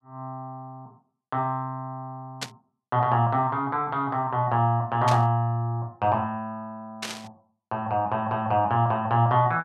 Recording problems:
burst of static; at 2.5 s, at 5 s and at 7 s; peak -2 dB vs average level

